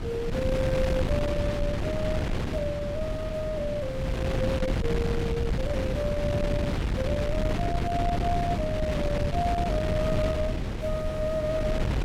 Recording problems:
wind on the microphone; below 300 Hz, SNR -2 dB

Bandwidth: 16 kHz